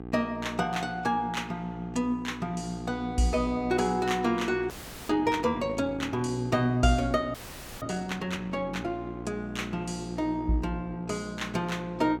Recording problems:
hum; 60 Hz, harmonics up to 1.6 kHz, SNR 11 dB
frozen audio; at 4.5 s and at 7.5 s

